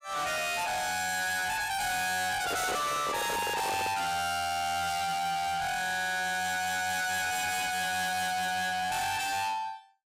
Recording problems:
distortion; soft clipping, signal-to-distortion ratio 6 dB
handling noise; from 2.5 to 4 s; peak +2 dB vs average level

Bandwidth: 15.5 kHz